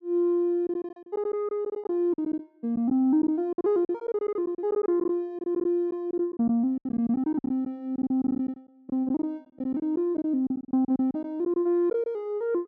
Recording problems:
lost packets; 14% of the sound replaced, filled with silence

